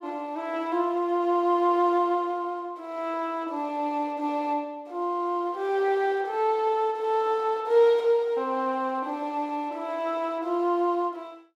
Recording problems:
none

